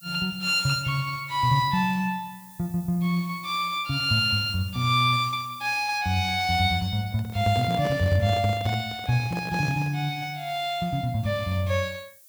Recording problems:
hiss; SNR 23 dB
handling noise; from 7 to 10 s; peak -6 dB vs average level

